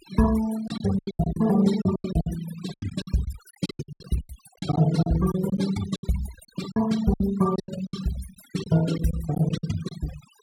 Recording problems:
noise reduction artefacts; signal-to-artefact ratio 13 dB
lost packets; 16% of the sound replaced, filled with silence

